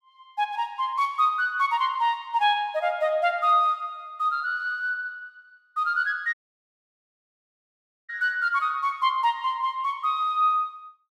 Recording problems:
audio cutting out; at 6.5 s for 2 s

